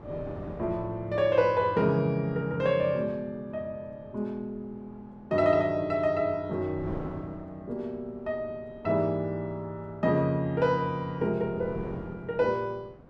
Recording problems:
wind noise; below 490 Hz, SNR 18 dB

